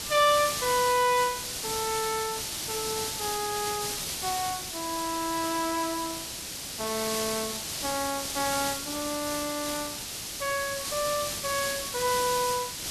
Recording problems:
hiss; SNR 2 dB

